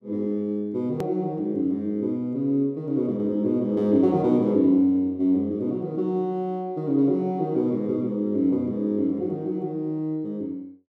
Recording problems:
edit click; at 1 s

